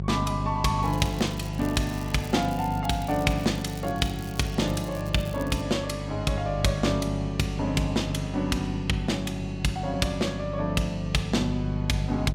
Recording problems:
hum; 50 Hz, harmonics up to 600 Hz, SNR 5 dB
crackling; from 1 to 5.5 s; loose cable, SNR 19 dB

